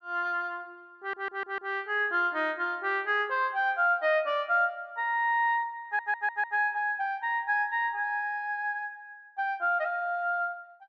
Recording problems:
audio stuttering; at 1 s and at 6 s

